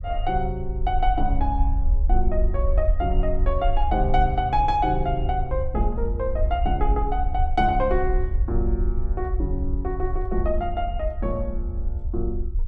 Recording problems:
low-frequency rumble; below 60 Hz, SNR 1 dB

